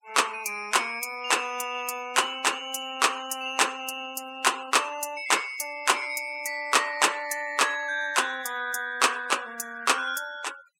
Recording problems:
denoising artefacts; signal-to-artefact ratio 20 dB

